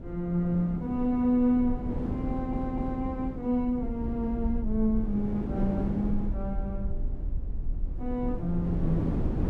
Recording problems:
rumble; below 56 Hz, SNR 9 dB
wind on the microphone; below 310 Hz, SNR 7 dB
audio stuttering; at 2.5 s

